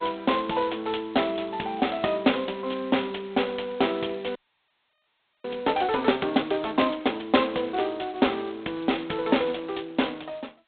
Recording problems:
phone line; 190 Hz to 3.7 kHz, G.726
audio freezing; at 4.5 s for 1 s

